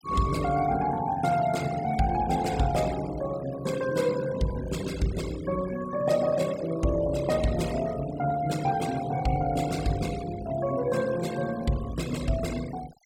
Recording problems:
denoising artefacts; signal-to-artefact ratio 15 dB

